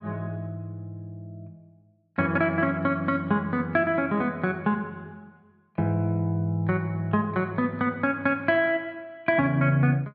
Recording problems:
none

